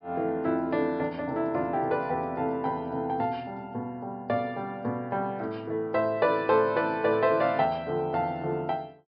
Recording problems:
treble missing; nothing above 5.5 kHz

